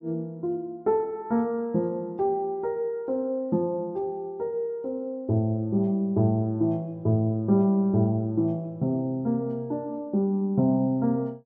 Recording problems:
none

